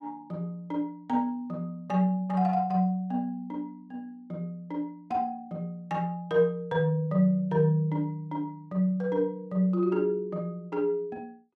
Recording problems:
none

